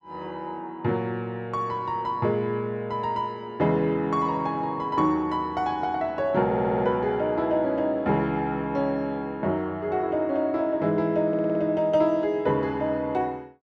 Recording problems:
audio stuttering; at 6.5 s and at 11 s

